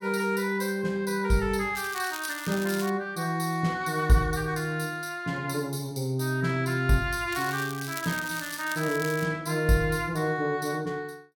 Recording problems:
crackle; from 2 to 3 s and from 7.5 to 9.5 s; loose cable, SNR 11 dB

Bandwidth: 17.5 kHz